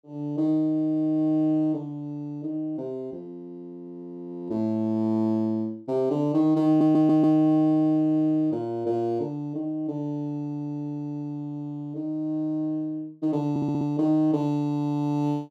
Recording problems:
stutter; at 6.5 s and at 14 s

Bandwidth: 13.5 kHz